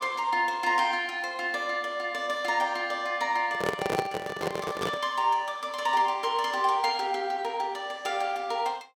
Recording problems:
handling noise; from 3.5 to 5 s; peak +3 dB vs average level

